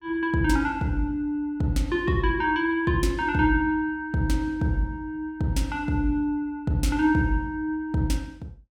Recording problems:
none

